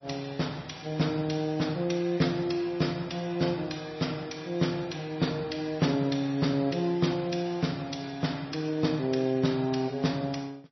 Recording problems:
lossy compression; MP3, log-spectral distance 5 dB, nothing above 5.8 kHz

